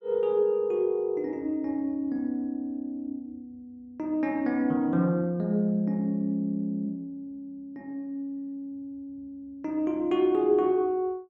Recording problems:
none

